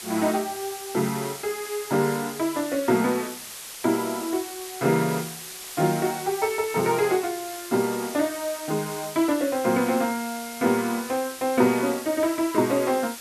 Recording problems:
hiss; slope +1 dB per octave, SNR 11 dB

